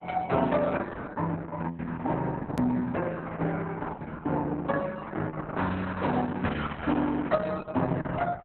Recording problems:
codec artefacts; Opus, log-spectral distance 3 dB, nothing above 13.1 kHz
hard cut with a click; at 2.5 s

